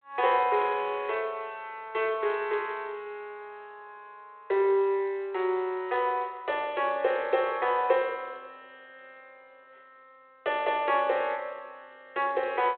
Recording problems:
phone line; 320 Hz to 3.5 kHz, G.726

